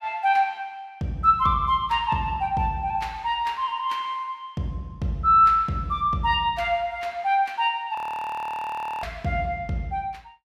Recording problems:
frozen audio; at 8 s for 1 s

